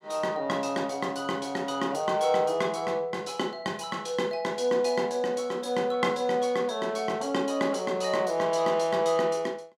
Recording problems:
none

